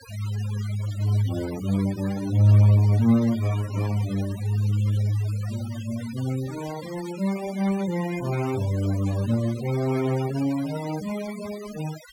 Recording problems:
denoising artefacts; signal-to-artefact ratio 16 dB

